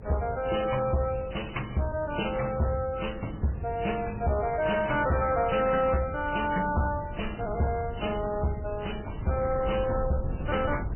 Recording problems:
codec artefacts; MP3, then AAC, log-spectral distance 6 dB, nothing above 3 kHz
distorted audio; hard clipping, uneven, signal-to-distortion ratio 10 dB
hum; 50 Hz, harmonics up to 550 Hz, SNR 17 dB
wind on the microphone; below 140 Hz, SNR 13 dB
crackling; at 4 s and from 7 to 10 s; loose cable, SNR 28 dB

